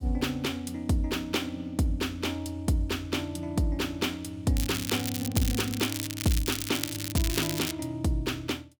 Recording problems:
crackling; from 4.5 to 7.5 s; loose cable, SNR 4 dB

